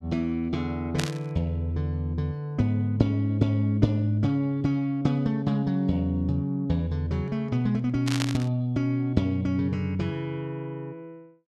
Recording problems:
burst of static; at 1 s and at 8 s; peak +1 dB vs average level

